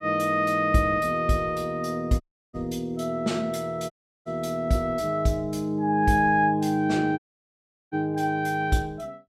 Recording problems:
dropout; at 2 s, at 4 s and at 7 s for 0.5 s

